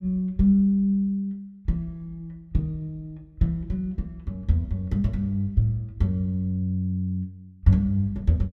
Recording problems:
none

